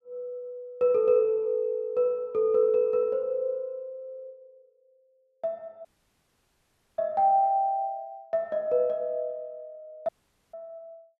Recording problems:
dropout; at 6 s for 1 s and at 10 s

